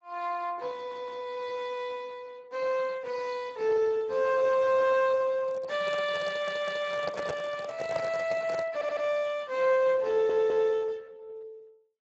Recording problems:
lossy codec; Speex, log-spectral distance 3 dB
audio stuttering; 4 times, first at 1 s
microphone handling noise; from 5.5 to 8.5 s; peak -2 dB vs average level

